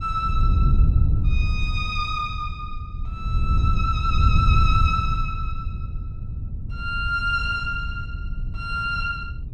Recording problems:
wind noise; below 98 Hz, SNR -1 dB

